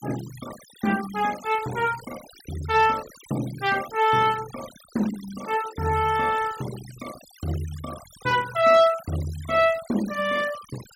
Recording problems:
noise reduction artefacts; signal-to-artefact ratio 17 dB

